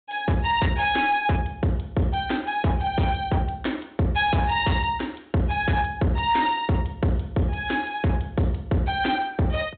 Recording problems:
low-pass filter; nothing above 4 kHz
distortion; hard clipping, signal-to-distortion ratio 11 dB

